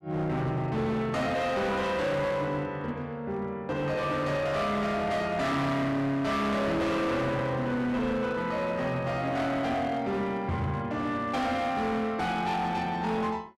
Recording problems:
distorted audio; hard clipping, uneven, signal-to-distortion ratio 8 dB

